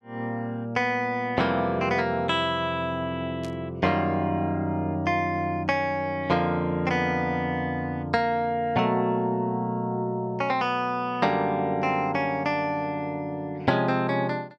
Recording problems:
static burst; at 3.5 s; peak -13 dB vs average level

